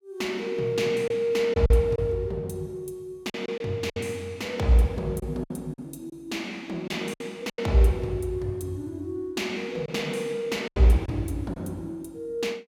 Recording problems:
lost packets; 5% of the sound replaced, filled with silence

